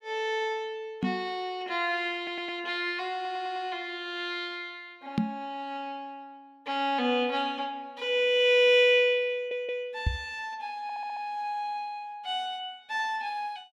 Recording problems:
microphone thump; at 1 s, at 5 s and at 10 s; peak +5 dB vs average level
stutter; 4 times, first at 2 s

